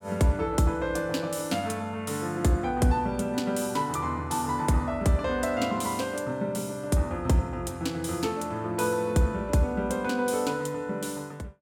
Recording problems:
none

